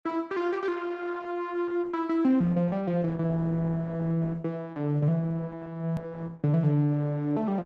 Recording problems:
codec artefacts; Opus, log-spectral distance 2 dB, nothing above 13.1 kHz
click at an edit; at 6 s

